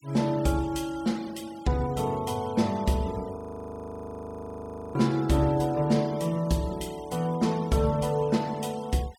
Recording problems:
noise reduction artefacts; signal-to-artefact ratio 22 dB
frozen audio; at 3.5 s for 1.5 s

